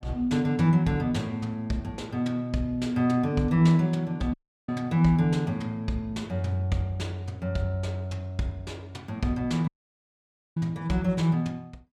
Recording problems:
dropout; at 4.5 s and at 9.5 s for 1 s

